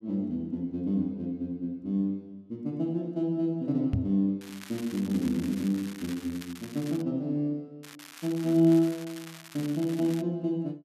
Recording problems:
microphone thump; at 4 s; peak +5 dB vs average level
crackle; from 4.5 to 7 s and from 8 to 10 s; loose cable, SNR 17 dB

